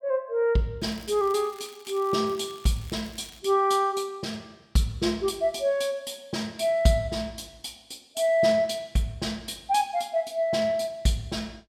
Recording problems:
crackle; from 1 to 3.5 s; loose cable, SNR 23 dB

